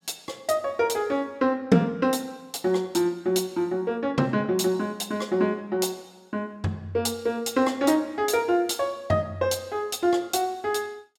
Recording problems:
none

